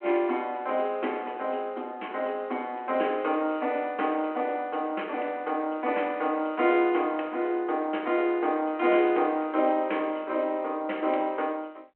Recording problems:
phone line; 280 Hz to 3.2 kHz, G.726

